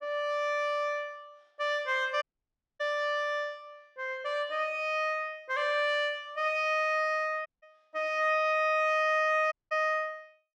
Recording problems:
audio cutting out; at 2 s for 0.5 s, at 7.5 s and at 9.5 s

